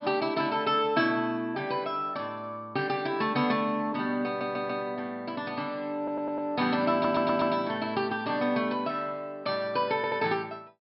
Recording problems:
treble missing; nothing above 5.3 kHz
stutter; 4 times, first at 4.5 s

